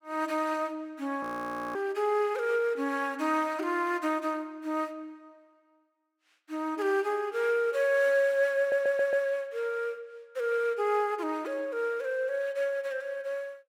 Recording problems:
frozen audio; at 1 s for 0.5 s
stutter; at 8.5 s

